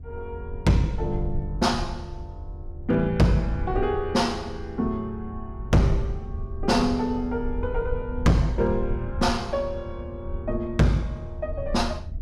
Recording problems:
distortion; hard clipping, signal-to-distortion ratio 11 dB
rumble; below 80 Hz, SNR 10 dB

